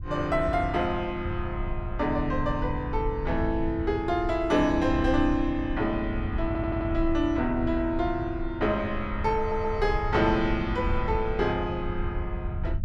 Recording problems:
low-frequency rumble; below 92 Hz, SNR 7 dB
audio stuttering; at 6.5 s and at 9.5 s

